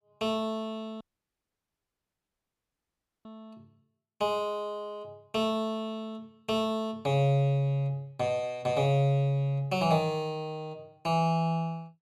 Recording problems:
dropout; at 1 s for 2 s

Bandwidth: 14.5 kHz